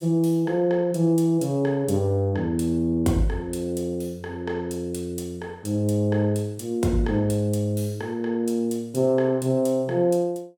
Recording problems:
none

